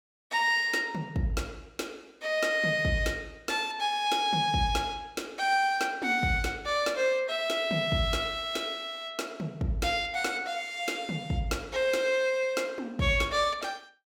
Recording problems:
none

